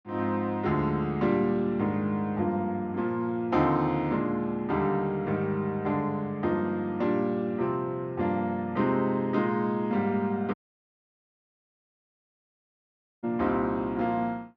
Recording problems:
dropout; at 11 s for 2.5 s

